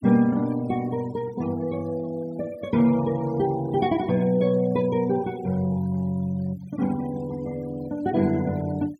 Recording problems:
denoising artefacts; signal-to-artefact ratio 21 dB

